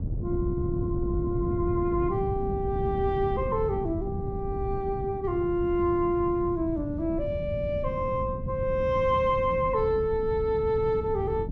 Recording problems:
wind noise; below 180 Hz, SNR 6 dB

